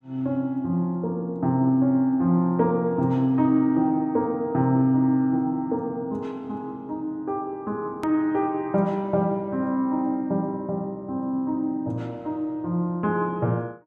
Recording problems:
click at an edit; at 8 s

